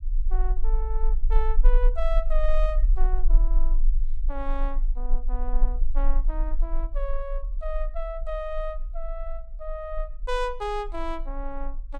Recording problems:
rumble; below 34 Hz, strongest tone 18 Hz, SNR -6 dB

